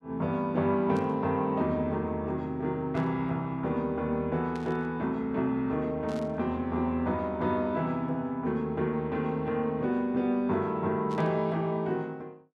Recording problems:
burst of static; 5 times, first at 1 s; peak -15 dB vs average level

